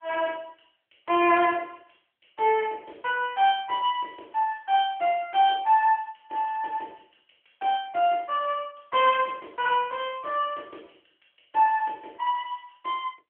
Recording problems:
phone line; 280 Hz to 3.4 kHz, AMR-NB

